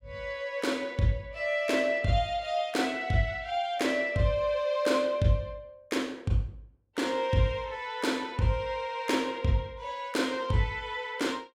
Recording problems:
none

